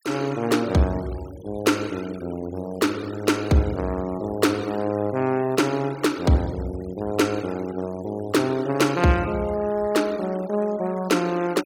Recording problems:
denoising artefacts; signal-to-artefact ratio 20 dB

